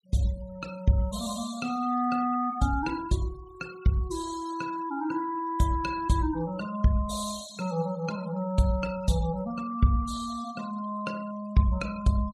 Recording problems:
denoising artefacts; signal-to-artefact ratio 19 dB

